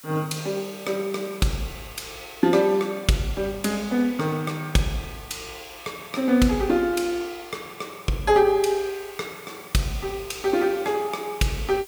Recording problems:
hiss; slope +2 dB per octave, SNR 21 dB

